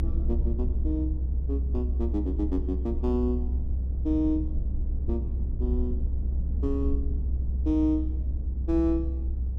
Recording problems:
low-frequency rumble; below 66 Hz, strongest tone 64 Hz, SNR -1 dB

